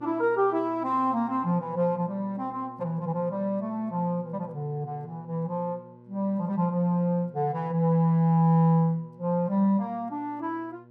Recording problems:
electrical hum; 60 Hz, harmonics up to 1.1 kHz, SNR 23 dB

